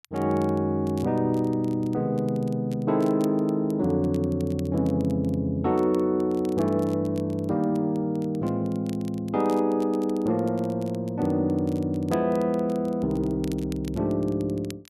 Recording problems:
crackling; vinyl, SNR 26 dB

